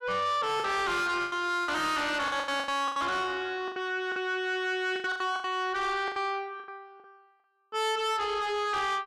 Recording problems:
distorted audio; soft clipping, signal-to-distortion ratio 7 dB
lost packets; 12% of the sound replaced, filled with the last packet

